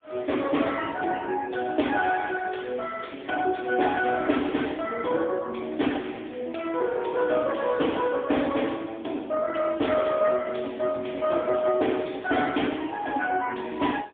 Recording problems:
phone line; 260 Hz to 3.4 kHz, AMR-NB, then MP3

